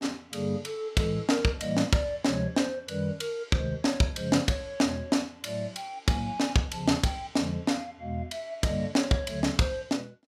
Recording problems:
none

